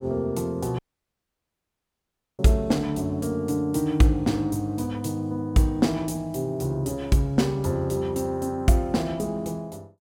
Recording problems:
audio cutting out; at 1 s for 1.5 s

